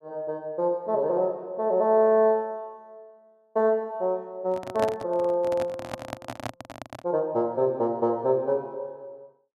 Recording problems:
microphone handling noise; from 4.5 to 7 s; peak -1 dB vs average level

